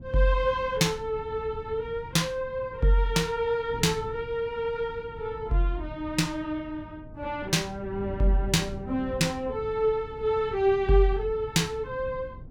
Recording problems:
wind noise; below 150 Hz, SNR 16 dB

